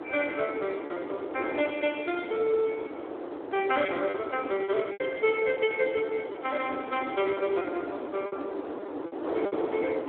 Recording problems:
telephone audio; 260 Hz to 3.5 kHz, Speex
wind noise; below 640 Hz, SNR 6 dB
packet loss; 6% of the sound replaced, filled with repeated pitch periods

